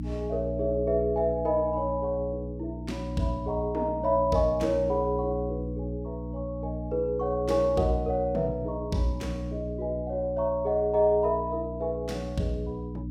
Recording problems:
hum; 60 Hz, harmonics up to 300 Hz, SNR 7 dB

